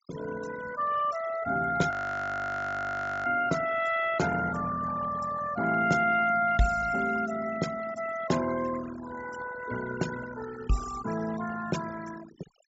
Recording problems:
treble missing; nothing above 8 kHz
denoising artefacts; signal-to-artefact ratio 14 dB
frozen audio; at 2 s for 1.5 s

